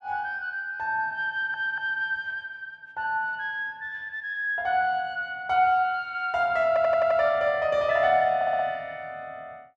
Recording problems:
audio stuttering; at 1.5 s, at 6.5 s and at 8.5 s

